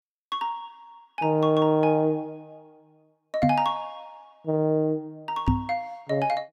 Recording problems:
microphone thump; at 3.5 s and at 5.5 s; peak +6 dB vs average level

